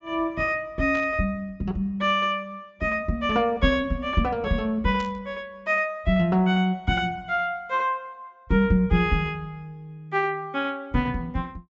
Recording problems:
treble missing; nothing above 8 kHz
burst of static; at 1 s and at 5 s; peak -11 dB vs average level

